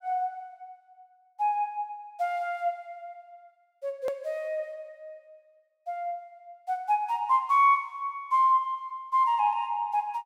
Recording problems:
click at an edit; at 4 s

